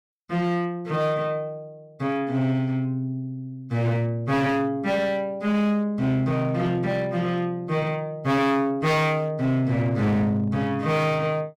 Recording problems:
distortion; hard clipping, signal-to-distortion ratio 11 dB

